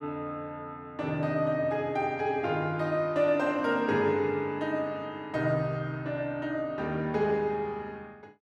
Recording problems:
none

